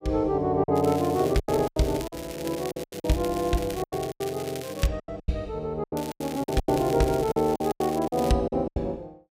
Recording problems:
lost packets; 14% of the sound replaced, filled with silence
crackle; from 1 to 5 s and from 6 to 8.5 s; loose cable, SNR 15 dB

